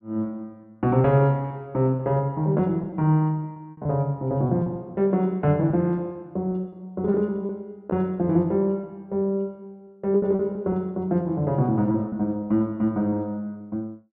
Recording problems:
packet loss; 7% of the sound replaced, filled with repeated pitch periods

